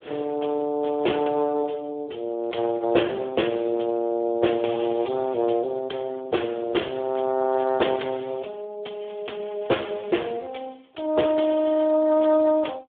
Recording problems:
telephone audio; 260 Hz to 3.5 kHz, Speex
crackle; at 5 s and from 9 to 10 s; loose cable, SNR 27 dB

